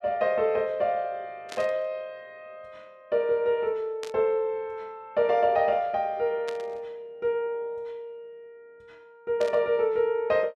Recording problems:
static burst; 4 times, first at 1.5 s; peak -8 dB vs average level

